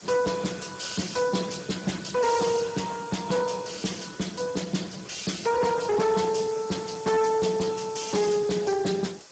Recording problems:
lossy compression; Speex, log-spectral distance 12 dB, nothing above 7.6 kHz
distortion; hard clipping, uneven, signal-to-distortion ratio 11 dB
hiss; SNR 20 dB

